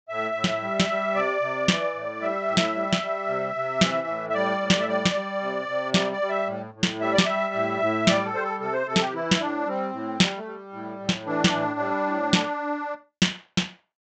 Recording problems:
treble cut off; nothing above 8 kHz

